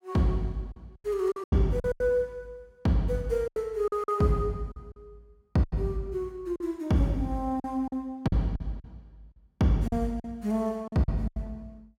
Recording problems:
packet loss; 10% of the sound replaced, filled with silence

